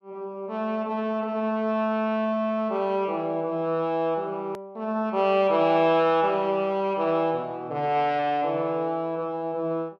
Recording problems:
click at an edit; at 4.5 s

